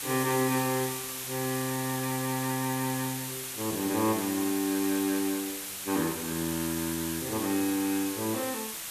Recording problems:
background hiss; slope +1 dB per octave, SNR 4 dB

